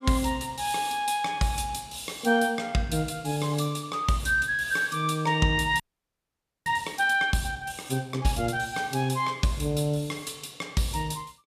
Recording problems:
frozen audio; at 6 s for 1 s

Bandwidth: 14.5 kHz